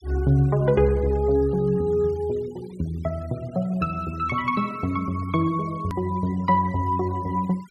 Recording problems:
noise reduction artefacts; signal-to-artefact ratio 25 dB
click at an edit; at 6 s

